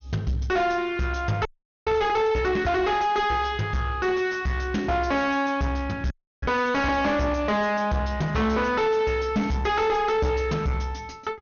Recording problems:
treble cut off; nothing above 6.6 kHz
distorted audio; soft clipping, signal-to-distortion ratio 6 dB
audio freezing; at 1.5 s and at 6 s

